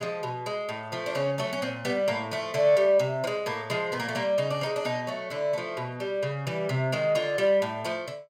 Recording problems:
none

